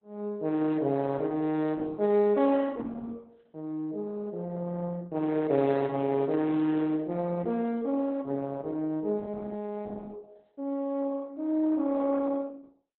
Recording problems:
codec artefacts; Opus, log-spectral distance 2 dB, nothing above 4 kHz

